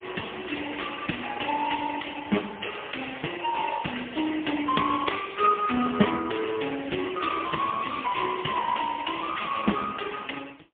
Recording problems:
phone line; 170 Hz to 3.3 kHz, AMR-NB, then MP3

